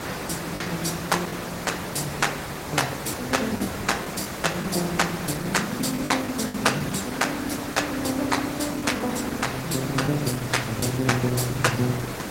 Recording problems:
lossy compression; Opus, log-spectral distance 7 dB, nothing above 16 kHz
background hiss; slope -5 dB per octave, SNR 6 dB
wind on the microphone; below 540 Hz, SNR 20 dB
lost packets; 4% of the sound replaced, filled with the last packet

